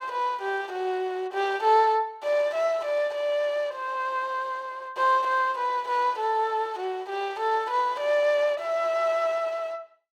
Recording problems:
none

